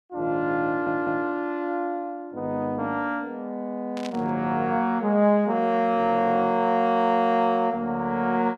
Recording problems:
audio stuttering; at 0.5 s
burst of static; at 4 s; peak -9 dB vs average level

